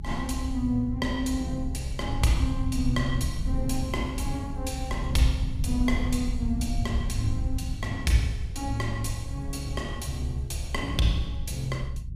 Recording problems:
rumble; below 84 Hz, SNR 3 dB

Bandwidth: 15.5 kHz